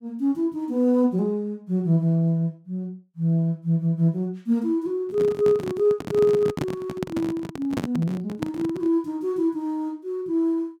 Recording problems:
handling noise; from 5 to 9 s; peak +1 dB vs average level

